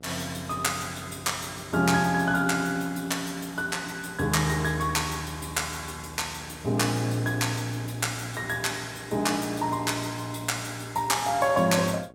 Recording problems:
hum; 60 Hz, harmonics up to 840 Hz, SNR 22 dB

